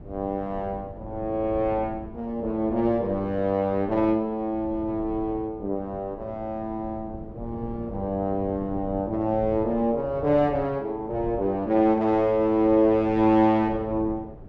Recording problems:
wind on the microphone; below 260 Hz, SNR 17 dB

